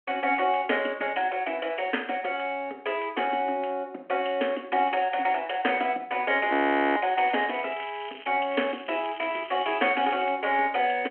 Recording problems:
phone line; 240 Hz to 3.2 kHz, G.726
audio freezing; at 6.5 s
crackling; from 7 to 8.5 s and from 8.5 to 10 s; loose cable, SNR 17 dB

